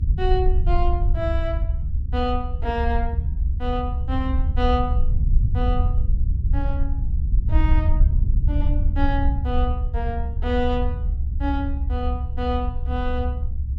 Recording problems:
rumble; below 70 Hz, SNR -4 dB

